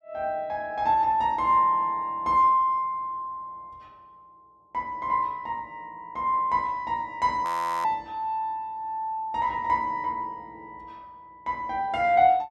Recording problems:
frozen audio; at 7.5 s

